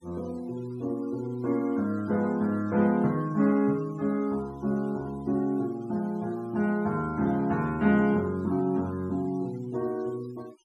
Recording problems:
denoising artefacts; signal-to-artefact ratio 25 dB

